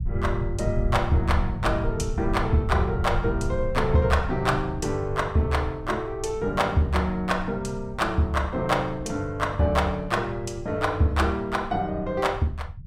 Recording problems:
low-frequency rumble; below 110 Hz, SNR 8 dB

